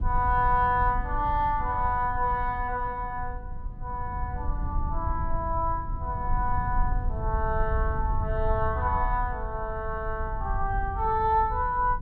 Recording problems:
rumble; below 76 Hz, SNR 5 dB

